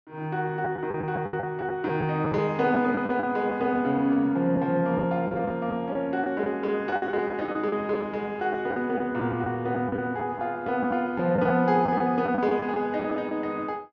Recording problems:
treble missing; nothing above 7.3 kHz
packet loss; 9% of the sound replaced, filled with the last packet

